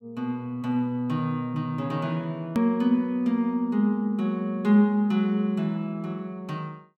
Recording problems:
edit click; at 2.5 s

